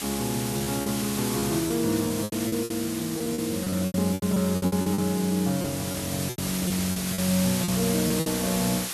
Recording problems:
background hiss; slope +1 dB per octave, SNR 5 dB
lost packets; 13% of the sound replaced, filled with repeated pitch periods

